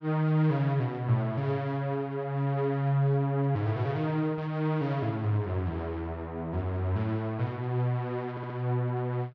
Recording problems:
stutter; at 8.5 s

